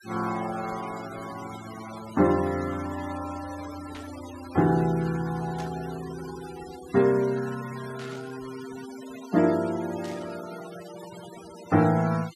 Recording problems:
denoising artefacts; signal-to-artefact ratio 16 dB
burst of static; 4 times, first at 4 s; peak -11 dB vs average level

